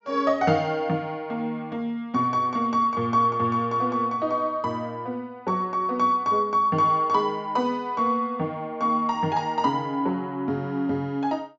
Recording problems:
treble cut off; nothing above 8 kHz

